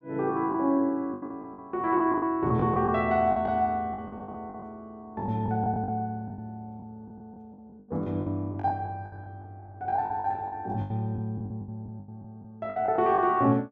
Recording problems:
packet loss; 15% of the sound replaced, filled with the last packet

